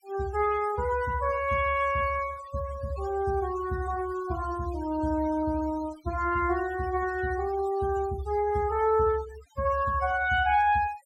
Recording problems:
denoising artefacts; signal-to-artefact ratio 17 dB

